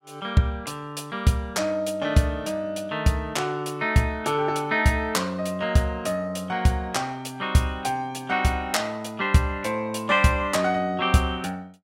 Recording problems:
none

